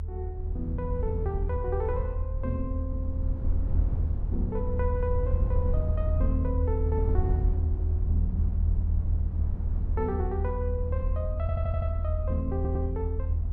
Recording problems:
rumble; below 82 Hz, SNR -6 dB
audio stuttering; at 11 s and at 13 s

